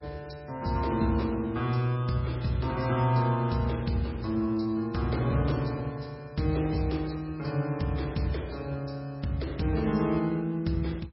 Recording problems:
lossy codec; MP3, log-spectral distance 3 dB, nothing above 5.5 kHz

